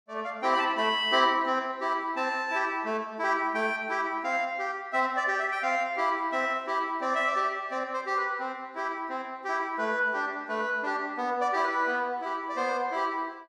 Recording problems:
none

